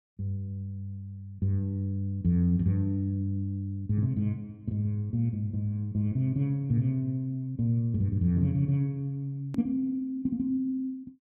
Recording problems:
hard cut with a click; at 9.5 s

